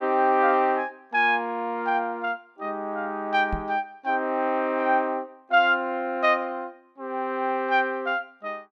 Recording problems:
microphone thump; at 3.5 s; peak -3 dB vs average level

